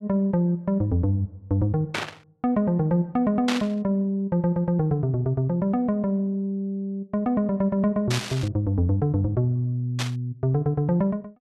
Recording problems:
burst of static; 4 times, first at 2 s; peak +1 dB vs average level

